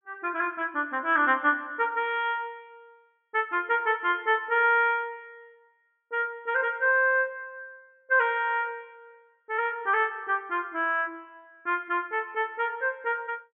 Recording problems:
low-pass filter; nothing above 3.4 kHz

